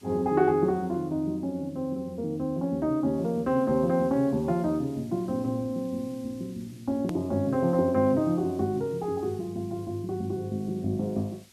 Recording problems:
hiss; SNR 28 dB
edit click; at 7 s

